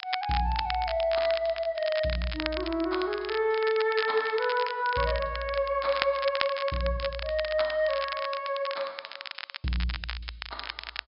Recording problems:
low-pass filter; nothing above 5.5 kHz
crackling; vinyl, SNR 9 dB

